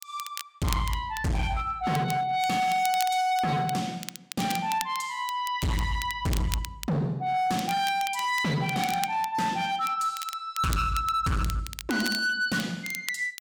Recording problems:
distortion; hard clipping, signal-to-distortion ratio 8 dB
crackling; vinyl, SNR 12 dB

